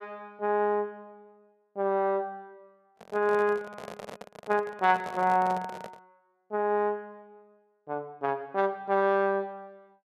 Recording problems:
handling noise; from 3 to 6 s; peak -8 dB vs average level

